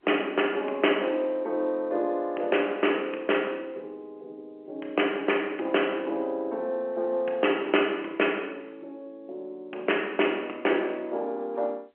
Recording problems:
phone line; 280 Hz to 3.1 kHz, G.711

